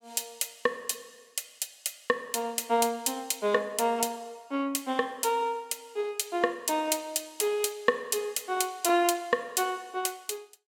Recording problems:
none

